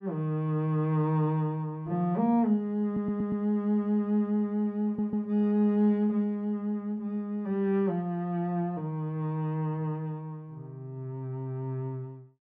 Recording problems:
stutter; at 3 s and at 5 s

